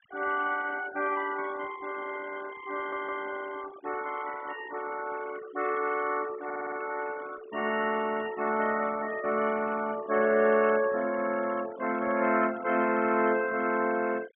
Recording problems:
low-pass filter; nothing above 3.5 kHz
denoising artefacts; signal-to-artefact ratio 15 dB
stutter; at 3 s and at 6.5 s

